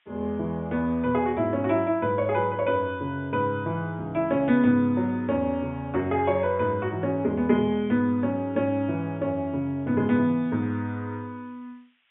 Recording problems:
low-pass filter; nothing above 3.6 kHz
hiss; SNR 40 dB

